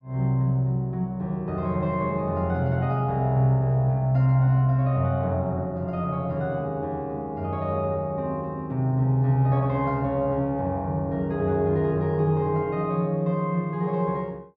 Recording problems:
none

